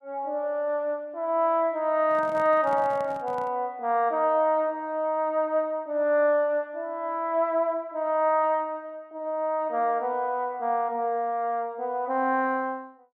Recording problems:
handling noise; from 2 to 3.5 s; peak -12 dB vs average level

